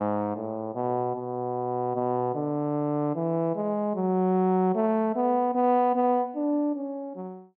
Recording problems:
none

